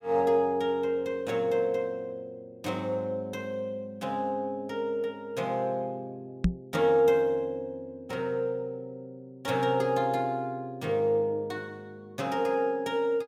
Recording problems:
microphone bump; at 6.5 s; peak +8 dB vs average level

